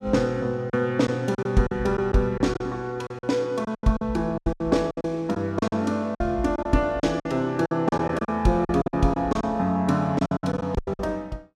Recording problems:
lost packets; 14% of the sound replaced, filled with silence

